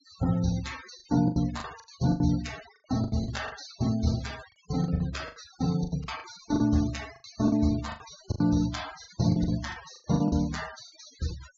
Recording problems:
treble cut off; nothing above 7.4 kHz
denoising artefacts; signal-to-artefact ratio 17 dB
lost packets; 14% of the sound replaced, filled with the last packet

